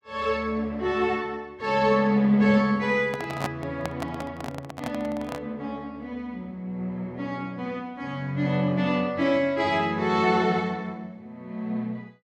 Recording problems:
microphone handling noise; from 3 to 5.5 s; peak +1 dB vs average level

